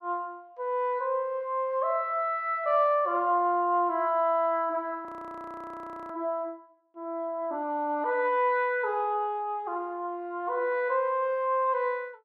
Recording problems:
audio freezing; at 5 s for 1 s

